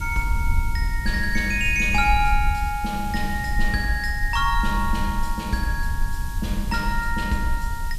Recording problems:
hiss; SNR 18 dB
low-frequency rumble; below 62 Hz, SNR 4 dB

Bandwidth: 14.5 kHz